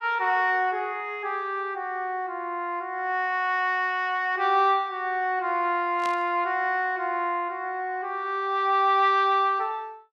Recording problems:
static burst; at 6 s; peak -9 dB vs average level

